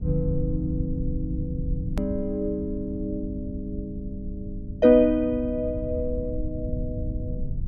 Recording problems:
low-frequency rumble; below 100 Hz, SNR 7 dB
hard cut with a click; at 2 s

